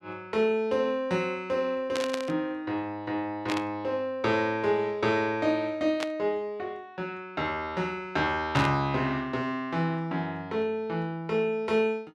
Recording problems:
burst of static; 4 times, first at 2 s; peak 0 dB vs average level

